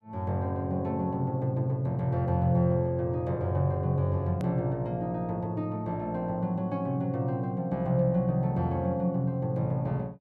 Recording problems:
hard cut with a click; at 4.5 s

